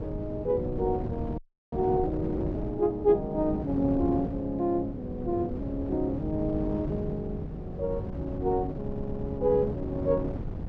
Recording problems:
wind on the microphone; below 250 Hz, SNR 7 dB
frozen audio; at 1.5 s
audio stuttering; at 9 s

